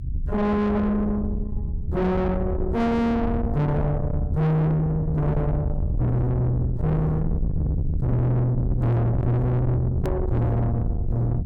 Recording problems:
distorted audio; soft clipping, signal-to-distortion ratio 7 dB
low-frequency rumble; below 160 Hz, SNR 4 dB
hard cut with a click; at 10 s

